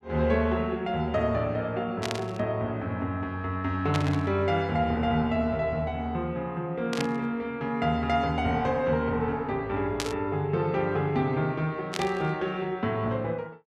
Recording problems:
static burst; 5 times, first at 2 s; peak +2 dB vs average level

